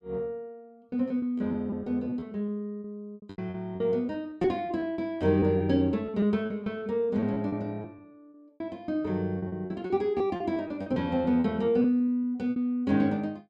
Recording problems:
lost packets; 13% of the sound replaced, filled with repeated pitch periods

